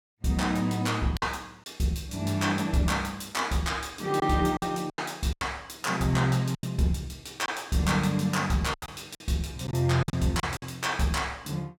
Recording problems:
lost packets; 7% of the sound replaced, filled with silence

